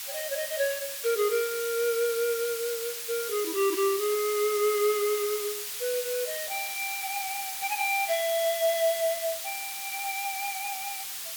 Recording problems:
background hiss; slope +4 dB per octave, SNR 4 dB

